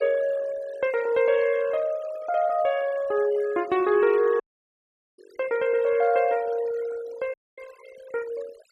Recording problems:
noise reduction artefacts; signal-to-artefact ratio 19 dB
dropout; at 4.5 s for 1 s and at 7.5 s

